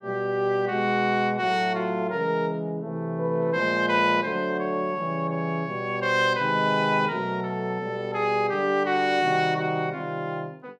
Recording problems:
none

